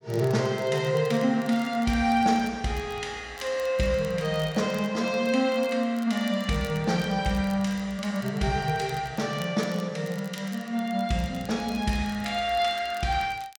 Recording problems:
crackling; vinyl, SNR 24 dB

